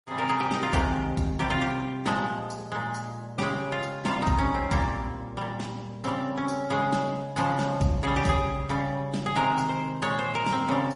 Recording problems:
codec artefacts; Opus, then MP3, log-spectral distance 4 dB, nothing above 10.4 kHz

